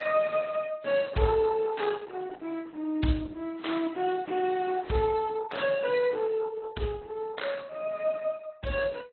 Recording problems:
lossy compression; Opus, then AAC, log-spectral distance 4 dB, nothing above 4.1 kHz

